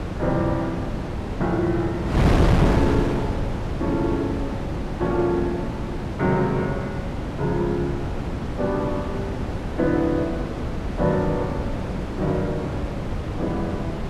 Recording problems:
wind noise; below 410 Hz, SNR 1 dB

